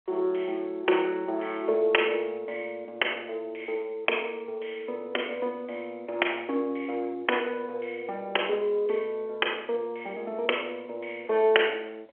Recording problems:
telephone audio; 320 Hz to 3.2 kHz, G.711

